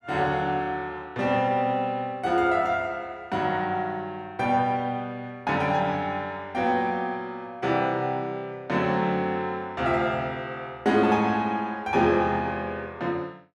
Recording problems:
none

